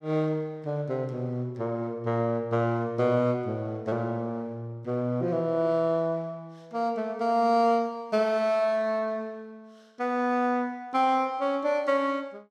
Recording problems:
none

